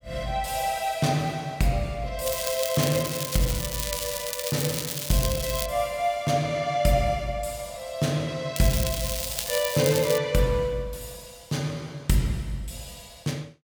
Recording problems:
crackle; from 2.5 to 5.5 s and from 8.5 to 10 s; loose cable, SNR 4 dB

